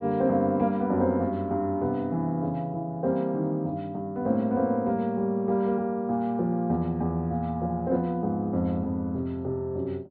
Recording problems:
low-pass filter; nothing above 4.7 kHz

